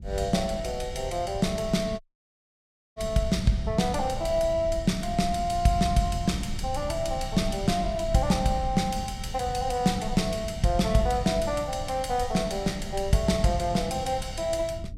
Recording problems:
low-frequency rumble; below 110 Hz, SNR 11 dB
dropout; at 2 s for 1 s

